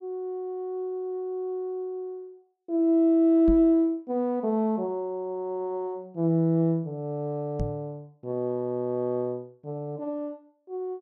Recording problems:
microphone thump; at 3.5 s and at 7.5 s; peak 0 dB vs average level

